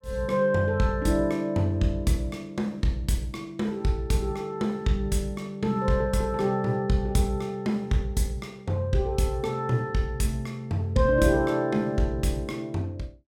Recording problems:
none

